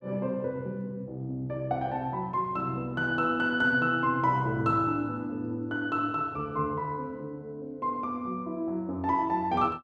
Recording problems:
none

